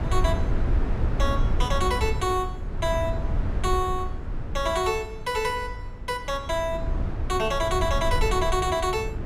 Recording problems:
low-frequency rumble; below 92 Hz, SNR 3 dB

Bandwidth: 14 kHz